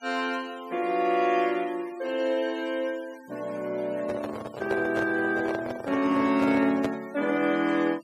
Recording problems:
noise reduction artefacts; signal-to-artefact ratio 21 dB
microphone handling noise; from 4 to 7 s; peak 0 dB vs average level

